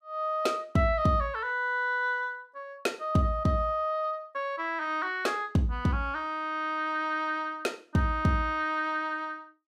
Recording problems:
none

